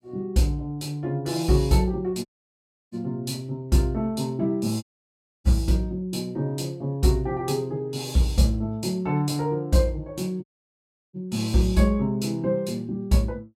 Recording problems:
dropout; at 2.5 s for 0.5 s, at 5 s for 0.5 s and at 10 s for 0.5 s

